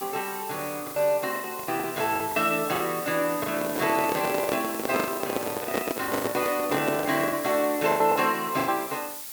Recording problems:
hiss; slope +2 dB per octave, SNR 9 dB
packet loss; 11% of the sound replaced, filled with the last packet
handling noise; from 3.5 to 7.5 s; peak +3 dB vs average level

